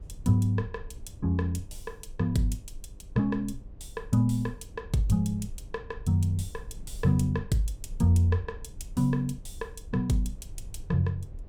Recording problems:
electrical hum; 50 Hz, harmonics up to 1.2 kHz, SNR 34 dB
rumble; below 66 Hz, SNR 17 dB

